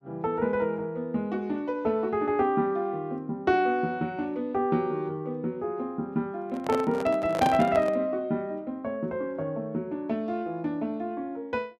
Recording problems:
microphone handling noise; from 6.5 to 8 s; peak +3 dB vs average level

